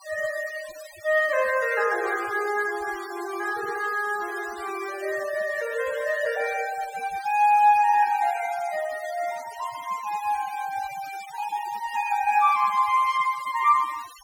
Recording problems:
noise reduction artefacts; signal-to-artefact ratio 18 dB

